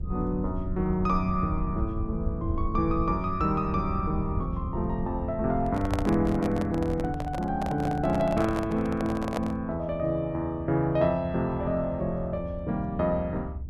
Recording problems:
rumble; below 100 Hz, SNR 8 dB
handling noise; from 5.5 to 9.5 s; peak +1 dB vs average level

